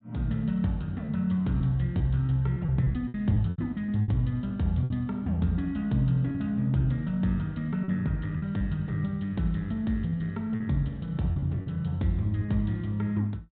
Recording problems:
treble cut off; nothing above 4 kHz
lost packets; 6% of the sound replaced, filled with repeated pitch periods

